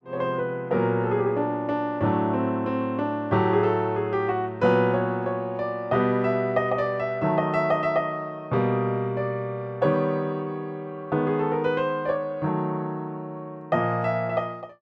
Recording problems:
none

